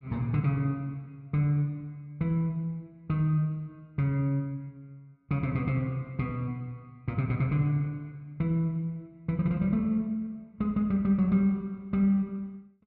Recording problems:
none

